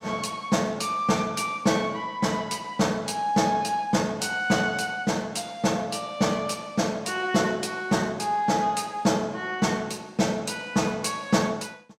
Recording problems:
none

